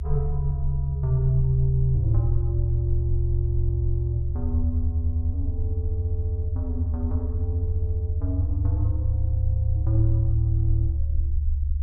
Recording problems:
low-frequency rumble; below 74 Hz, strongest tone 72 Hz, SNR 1 dB

